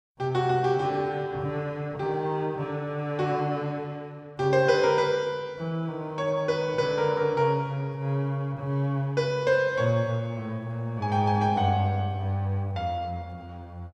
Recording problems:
none

